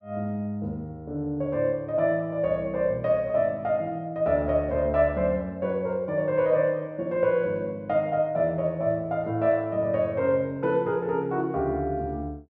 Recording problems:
treble cut off; nothing above 8 kHz

